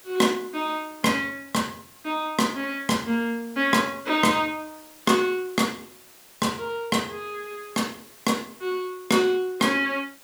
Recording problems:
background hiss; slope -1 dB per octave, SNR 23 dB

